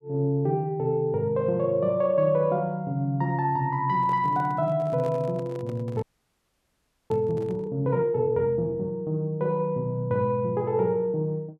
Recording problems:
microphone handling noise; from 4 to 7.5 s; peak -10 dB vs average level
frozen audio; at 6 s for 1 s

